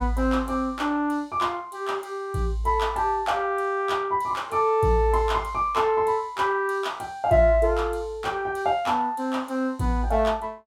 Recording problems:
none

